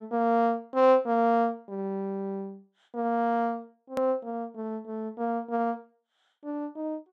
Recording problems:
hard cut with a click; at 4 s

